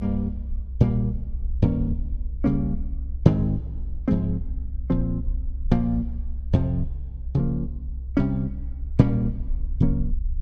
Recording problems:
rumble; below 64 Hz, SNR 7 dB

